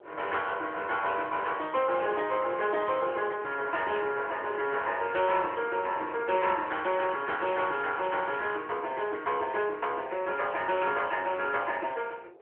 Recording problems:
phone line; 320 Hz to 3.3 kHz, AMR-NB
wind noise; below 620 Hz, SNR 20 dB

